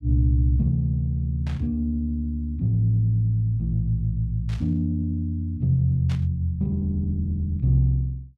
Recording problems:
static burst; at 1.5 s, at 4.5 s and at 6 s; peak -13 dB vs average level

